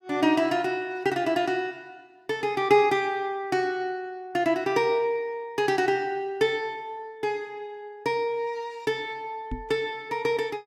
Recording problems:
knock on the microphone; at 9.5 s; peak -3 dB vs average level

